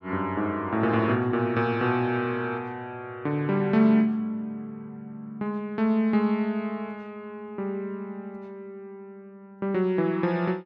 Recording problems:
none

